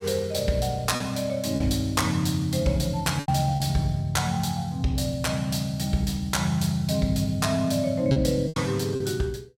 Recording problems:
packet loss; 4% of the sound replaced, filled with repeated pitch periods

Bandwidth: 16 kHz